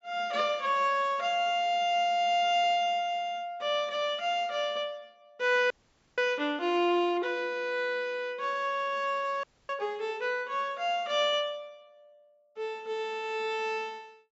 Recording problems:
low-pass filter; nothing above 7.5 kHz
audio freezing; at 5.5 s and at 9.5 s

